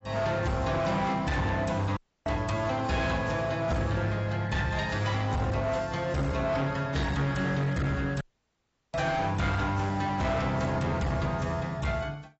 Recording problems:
codec artefacts; AAC, log-spectral distance 3 dB, nothing above 7.8 kHz
distortion; hard clipping, uneven, signal-to-distortion ratio 8 dB
dropout; at 2 s and at 8 s for 0.5 s

